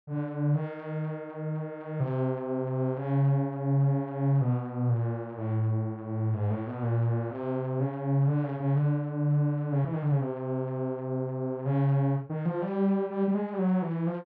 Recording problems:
none

